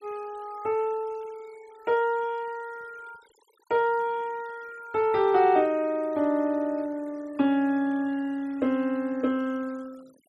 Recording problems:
noise reduction artefacts; signal-to-artefact ratio 28 dB

